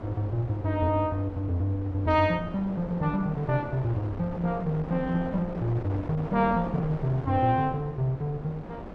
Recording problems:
wind noise; below 610 Hz, SNR 12 dB

